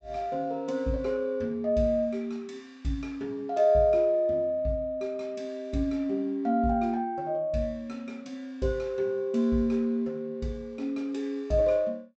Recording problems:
low-pass filter; nothing above 8 kHz

